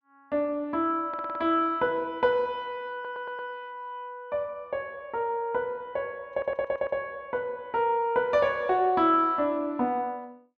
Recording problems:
audio stuttering; at 1 s, at 3 s and at 6.5 s

